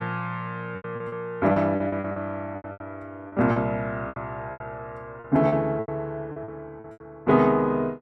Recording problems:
lost packets; 14% of the sound replaced, filled with repeated pitch periods

